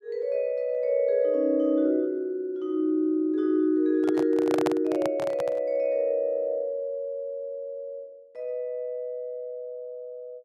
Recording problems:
microphone handling noise; from 4 to 5.5 s; peak +1 dB vs average level

